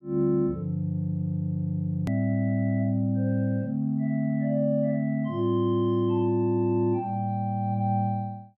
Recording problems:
edit click; at 2 s

